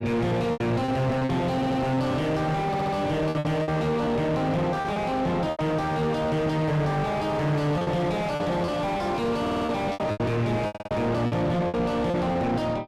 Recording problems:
distortion; soft clipping, signal-to-distortion ratio 5 dB
lost packets; 9% of the sound replaced, filled with repeated pitch periods
audio stuttering; 4 times, first at 1.5 s

